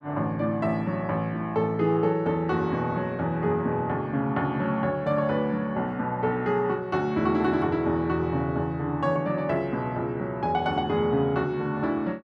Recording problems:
none

